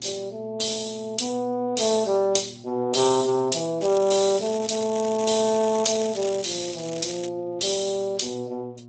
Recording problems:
lossy compression; Speex, log-spectral distance 8 dB, nothing above 8 kHz
hum; 60 Hz, harmonics up to 720 Hz, SNR 22 dB
crackle; from 4 to 7.5 s; loose cable, SNR 13 dB

